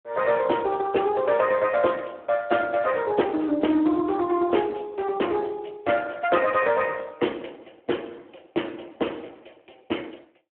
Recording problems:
phone line; 260 Hz to 3.2 kHz, Speex

